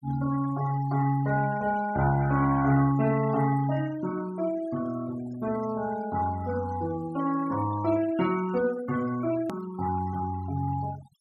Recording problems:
noise reduction artefacts; signal-to-artefact ratio 17 dB
click at an edit; at 9.5 s

